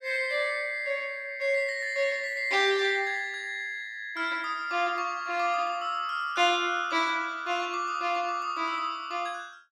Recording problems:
none

